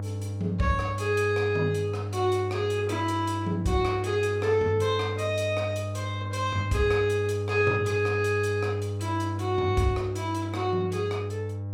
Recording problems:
electrical hum; 50 Hz, harmonics up to 800 Hz, SNR 6 dB

